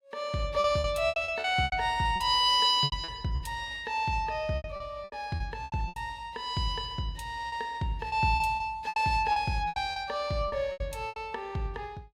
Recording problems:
lost packets; 13% of the sound replaced, filled with repeated pitch periods

